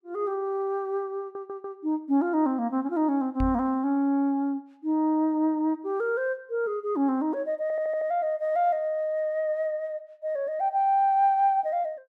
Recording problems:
audio stuttering; at 1 s and at 7.5 s
knock on the microphone; at 3.5 s; peak -1 dB vs average level

